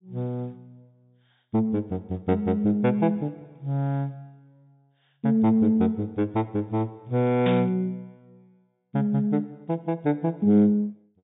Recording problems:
treble missing; nothing above 3.7 kHz
static burst; at 7.5 s; peak -4 dB vs average level

